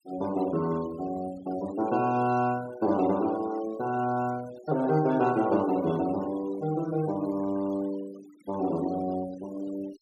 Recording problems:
noise reduction artefacts; signal-to-artefact ratio 19 dB

